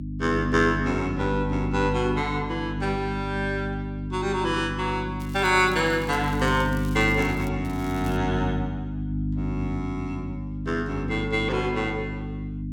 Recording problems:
hum; 50 Hz, harmonics up to 300 Hz, SNR 4 dB
crackling; from 5 to 7.5 s and at 7.5 s; loose cable, SNR 21 dB

